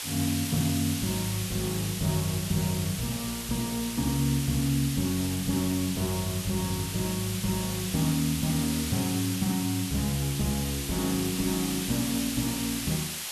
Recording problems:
hiss; slope +2 dB per octave, SNR 4 dB

